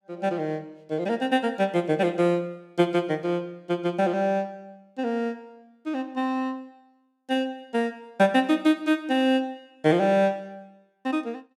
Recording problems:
none

